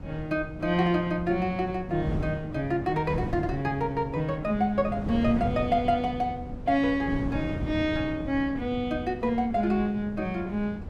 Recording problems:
wind noise; below 240 Hz, SNR 9 dB

